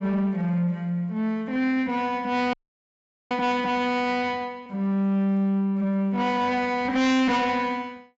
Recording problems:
low-pass filter; nothing above 8 kHz
distorted audio; soft clipping, signal-to-distortion ratio 7 dB
frozen audio; at 2.5 s for 1 s

